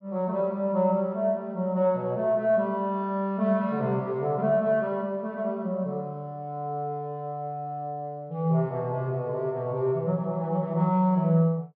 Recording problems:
treble cut off; nothing above 5.5 kHz

